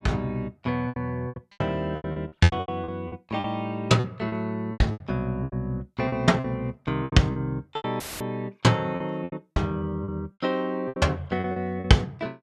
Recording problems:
lost packets; 15% of the sound replaced, filled with repeated pitch periods
dropout; at 8 s; filled with static

